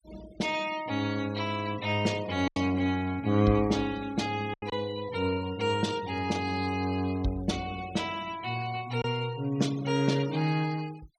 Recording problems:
noise reduction artefacts; signal-to-artefact ratio 18 dB
lost packets; 1.8% of the sound replaced, filled with silence

